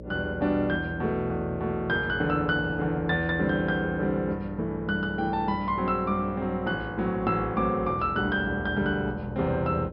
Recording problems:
treble missing; nothing above 5.5 kHz
hum; 60 Hz, harmonics up to 600 Hz, SNR 14 dB

